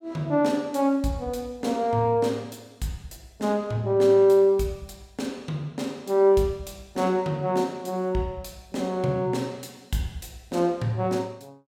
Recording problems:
none

